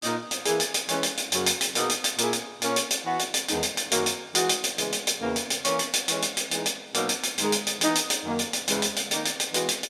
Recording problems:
none

